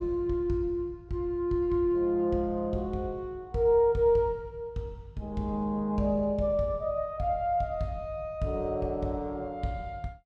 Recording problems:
none

